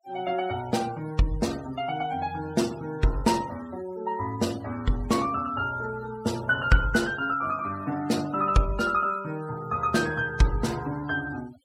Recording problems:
denoising artefacts; signal-to-artefact ratio 18 dB

